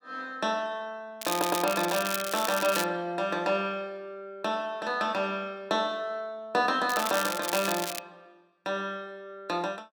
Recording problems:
crackle; from 1 to 3 s and from 7 to 8 s; loose cable, SNR 4 dB
stutter; at 1.5 s

